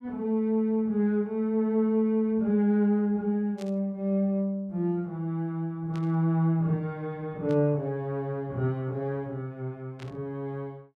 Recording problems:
static burst; 4 times, first at 3.5 s; peak -14 dB vs average level

